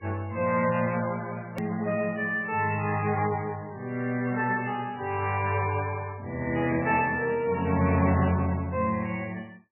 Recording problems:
lossy codec; MP3, log-spectral distance 3 dB, nothing above 2.4 kHz
hard cut with a click; at 1.5 s

